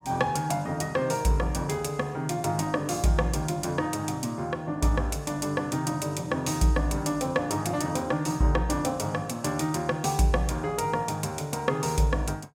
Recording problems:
none

